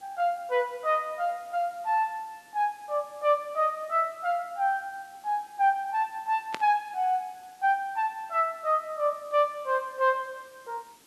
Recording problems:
background hiss; SNR 28 dB
static burst; at 6.5 s; peak -2 dB vs average level

